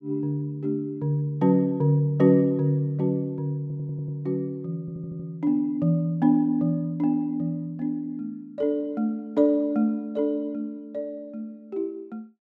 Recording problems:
stutter; at 3.5 s and at 5 s

